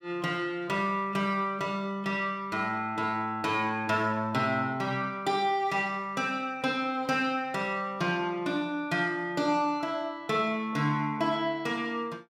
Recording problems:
none

